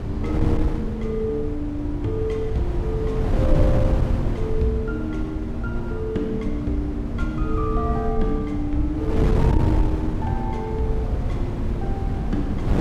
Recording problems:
low-frequency rumble; below 76 Hz, SNR 11 dB
wind noise; below 150 Hz, SNR -2 dB

